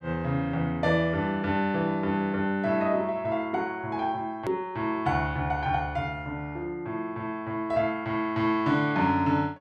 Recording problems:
click at an edit; at 4.5 s

